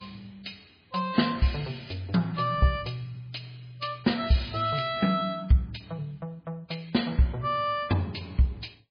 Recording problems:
codec artefacts; MP3, log-spectral distance 6 dB

